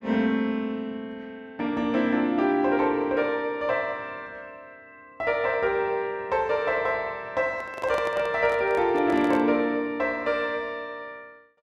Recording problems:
handling noise; from 7.5 to 9.5 s; peak -5 dB vs average level

